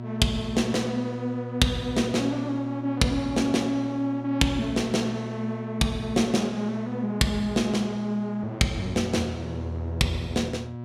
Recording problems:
mains hum; 60 Hz, harmonics up to 1.3 kHz, SNR 10 dB

